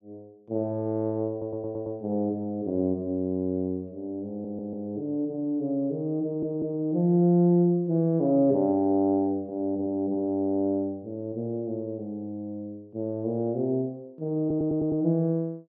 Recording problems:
stutter; 4 times, first at 1.5 s

